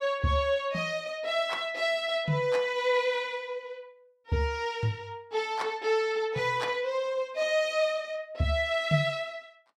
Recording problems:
none

